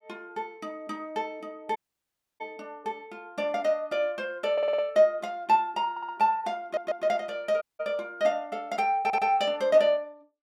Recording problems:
audio cutting out; at 2 s for 0.5 s and at 7.5 s
audio stuttering; 4 times, first at 4.5 s

